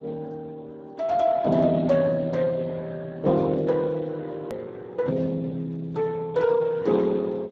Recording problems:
lossy compression; Speex, log-spectral distance 3 dB
click at an edit; at 4.5 s

